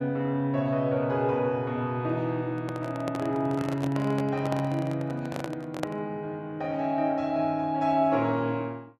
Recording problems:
microphone handling noise; from 2.5 to 6 s; peak +1 dB vs average level

